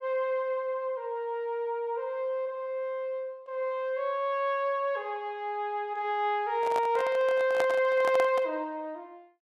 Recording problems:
microphone handling noise; from 6.5 to 8.5 s; peak +1 dB vs average level

